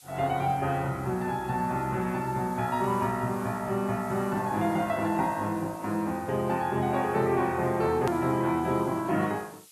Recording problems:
lossy compression; MP3, log-spectral distance 2 dB, nothing above 13.1 kHz
background hiss; slope +4 dB per octave, SNR 23 dB
hard cut with a click; at 8 s

